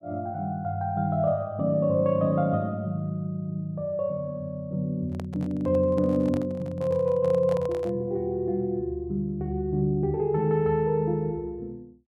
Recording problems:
handling noise; from 5 to 8 s; peak -7 dB vs average level

